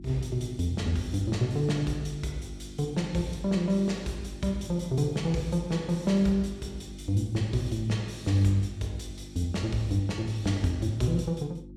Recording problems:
electrical hum; 50 Hz, harmonics up to 350 Hz, SNR 16 dB

